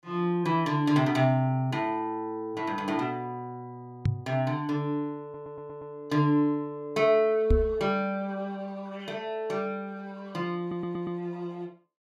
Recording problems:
microphone thump; at 4 s and at 7.5 s; peak +7 dB vs average level
audio stuttering; at 5 s and at 11 s

